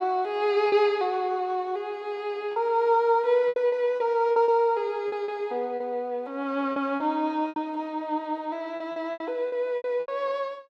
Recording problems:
packet loss; 9% of the sound replaced, filled with repeated pitch periods

